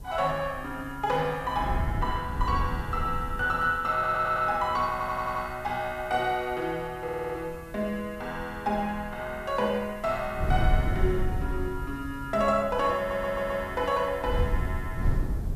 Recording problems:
background hiss; slope 0 dB per octave, SNR 27 dB
wind noise; below 100 Hz, SNR 4 dB
audio stuttering; 4 times, first at 4 s

